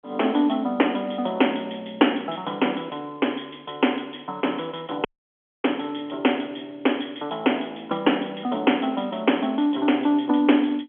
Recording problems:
phone line; 220 Hz to 3.3 kHz, G.711
audio cutting out; at 5 s for 0.5 s

